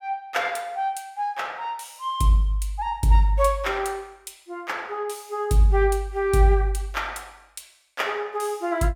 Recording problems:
none

